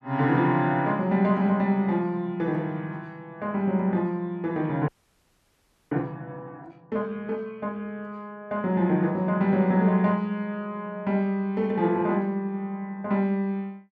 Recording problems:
frozen audio; at 5 s for 1 s

